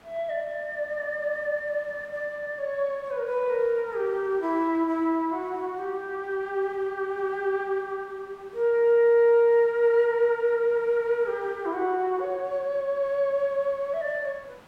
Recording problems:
background hiss; SNR 28 dB

